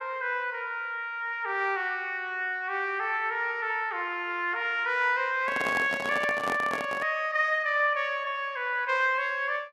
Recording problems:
handling noise; from 5.5 to 7 s; peak -2 dB vs average level

